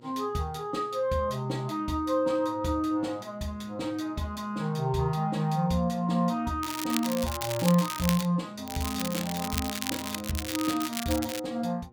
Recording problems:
hum; 60 Hz, harmonics up to 1.3 kHz, SNR 25 dB
crackle; from 6.5 to 8.5 s and from 8.5 to 11 s; loose cable, SNR 6 dB

